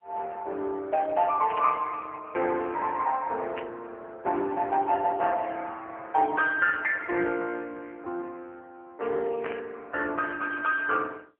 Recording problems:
phone line; 320 Hz to 3.1 kHz, AMR-NB
static burst; at 1.5 s, at 3.5 s and at 9.5 s; peak -5 dB vs average level

